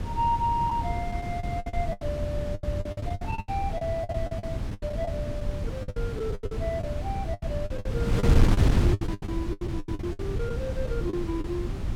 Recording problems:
wind noise; below 160 Hz, SNR -3 dB
lost packets; 17% of the sound replaced, filled with the last packet

